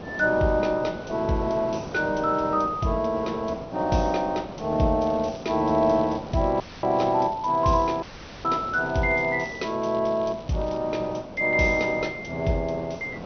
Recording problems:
treble missing; nothing above 6.2 kHz
lossy compression; G.722, log-spectral distance 5 dB
hiss; SNR 13 dB
crackle; from 5 to 11 s; loose cable, SNR 27 dB
dropout; at 6.5 s and at 8 s

